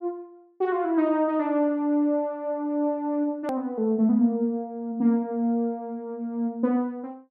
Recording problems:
click at an edit; at 3.5 s

